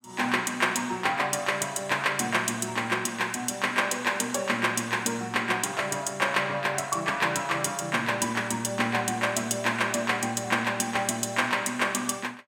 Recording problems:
none

